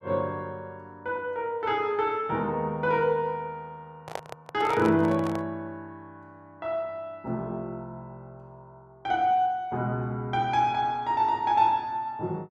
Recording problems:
handling noise; from 4 to 5.5 s; peak -3 dB vs average level

